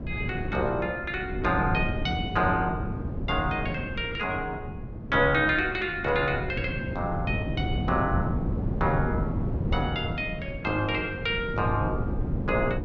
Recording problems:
wind on the microphone; below 230 Hz, SNR 4 dB

